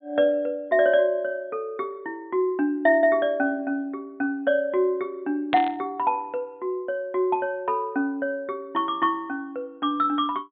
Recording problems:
low-pass filter; nothing above 4 kHz
burst of static; at 5.5 s; peak 0 dB vs average level

